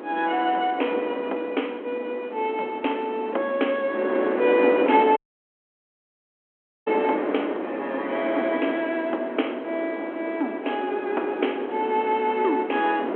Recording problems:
phone line; 240 Hz to 3.3 kHz, G.726
wind on the microphone; below 660 Hz, SNR 7 dB
audio cutting out; at 5 s for 1.5 s

